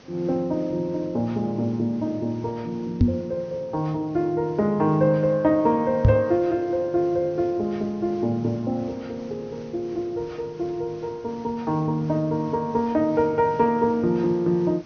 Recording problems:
low-pass filter; nothing above 6.3 kHz
background hiss; slope -5 dB per octave, SNR 24 dB
microphone thump; at 3 s and at 6 s; peak +9 dB vs average level

